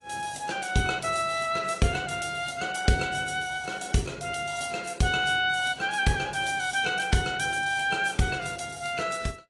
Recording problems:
codec artefacts; AAC, log-spectral distance 6 dB, nothing above 10.4 kHz

